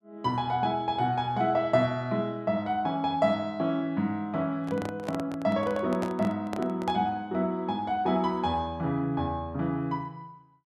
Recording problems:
microphone handling noise; from 4.5 to 7 s; peak -2 dB vs average level

